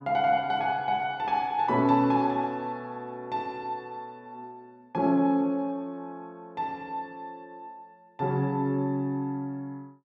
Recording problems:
none

